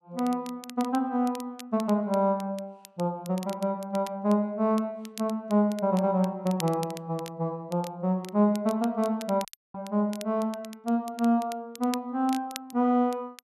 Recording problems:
crackle; vinyl, SNR 19 dB
audio cutting out; at 9.5 s

